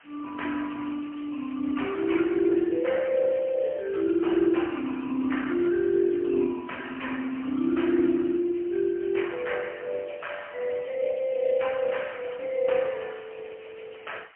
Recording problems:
telephone audio; 150 Hz to 3.1 kHz, AMR-NB, then MP3
hiss; SNR 27 dB

